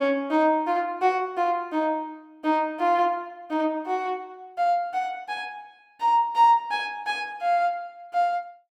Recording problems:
none

